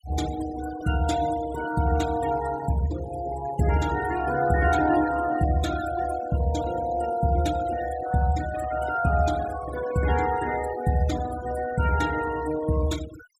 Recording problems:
noise reduction artefacts; signal-to-artefact ratio 13 dB

